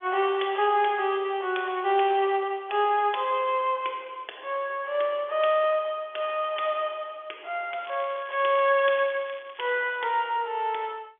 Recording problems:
telephone audio; 320 Hz to 3.5 kHz, G.711
crackling; from 8 to 9.5 s; loose cable, SNR 21 dB

